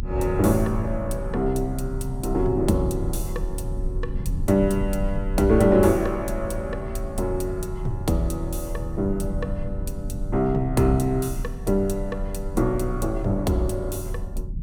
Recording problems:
rumble; below 84 Hz, strongest tone 34 Hz, SNR 8 dB

